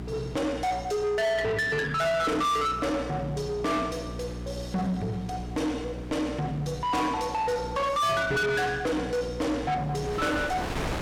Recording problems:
distorted audio; soft clipping, signal-to-distortion ratio 7 dB
hum; 60 Hz, harmonics up to 420 Hz, SNR 12 dB
wind noise; below 1.6 kHz, SNR 15 dB

